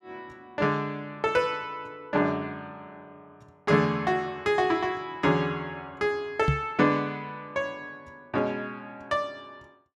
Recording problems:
knock on the microphone; at 6.5 s; peak +6 dB vs average level

